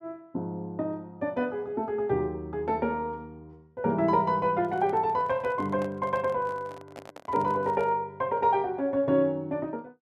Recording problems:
handling noise; from 4.5 to 8 s; peak -10 dB vs average level

